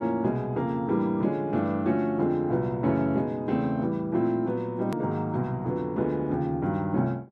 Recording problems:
click at an edit; at 5 s

